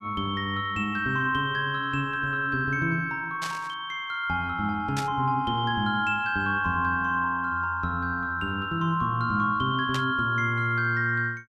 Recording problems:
burst of static; at 3.5 s, at 5 s and at 10 s; peak -3 dB vs average level

